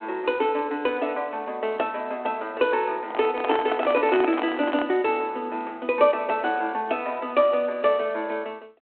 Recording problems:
phone line; 240 Hz to 3.3 kHz, G.726
handling noise; from 3 to 5 s; peak +1 dB vs average level

